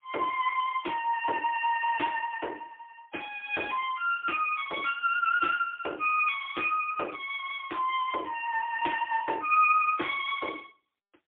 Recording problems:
phone line; 280 Hz to 3.5 kHz, AMR-NB, then MP3

